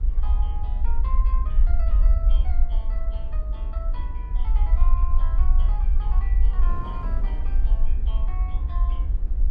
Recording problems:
rumble; below 50 Hz, SNR -17 dB
wind noise; below 270 Hz, SNR 4 dB

